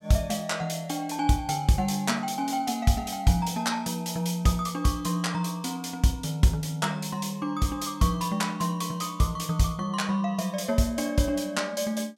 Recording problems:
none

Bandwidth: 16 kHz